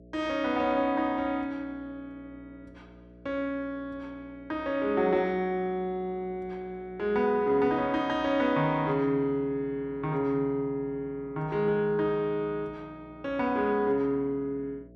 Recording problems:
hum; 60 Hz, harmonics up to 660 Hz, SNR 23 dB

